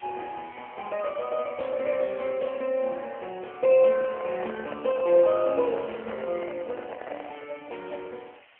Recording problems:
telephone audio; 300 Hz to 3.1 kHz, AMR-NB
background hiss; SNR 27 dB
microphone handling noise; from 4 to 7.5 s; peak -6 dB vs average level

